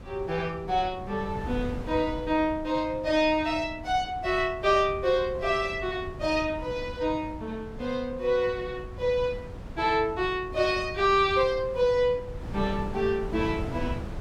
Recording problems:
wind noise; below 230 Hz, SNR 13 dB

